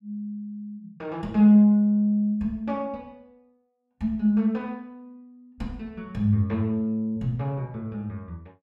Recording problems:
none

